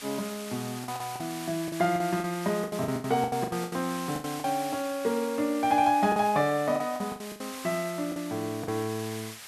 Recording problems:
background hiss; SNR 12 dB
packet loss; 12% of the sound replaced, filled with the last packet

